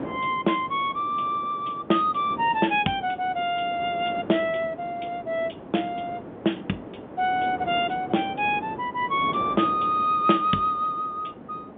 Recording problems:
telephone audio; 130 Hz to 3.6 kHz, G.711
wind noise; below 640 Hz, SNR 13 dB

